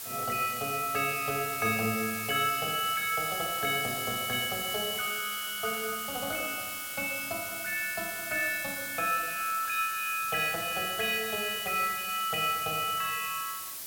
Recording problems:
hiss; slope +1 dB per octave, SNR 6 dB

